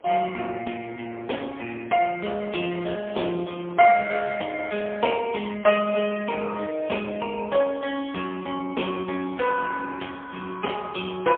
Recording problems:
phone line; 300 Hz to 3.3 kHz, AMR-NB, then MP3
wind on the microphone; below 1 kHz, SNR 23 dB

